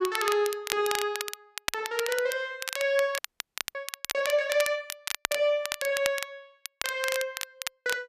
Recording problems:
crackling; vinyl, SNR 6 dB
frozen audio; at 3 s for 0.5 s

